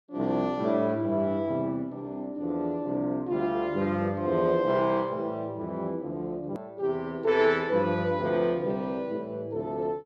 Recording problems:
hard cut with a click; at 6.5 s

